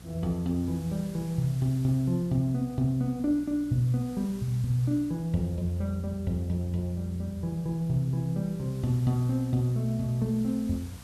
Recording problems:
hum; 60 Hz, harmonics up to 720 Hz, SNR 20 dB
hiss; slope -1 dB per octave, SNR 24 dB

